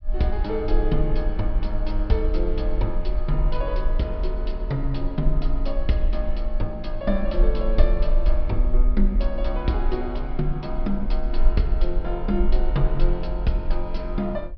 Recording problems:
low-pass filter; nothing above 5.5 kHz
low-frequency rumble; below 40 Hz, strongest tone 18 Hz, SNR 0 dB

